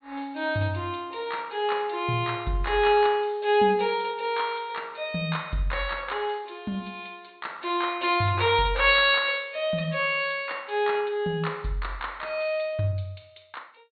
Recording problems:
low-pass filter; nothing above 4.4 kHz

